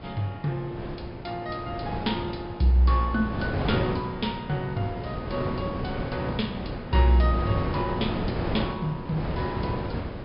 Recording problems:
low-pass filter; nothing above 5.5 kHz
wind noise; below 550 Hz, SNR 4 dB

